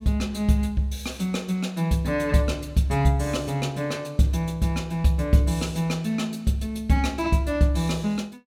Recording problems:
none

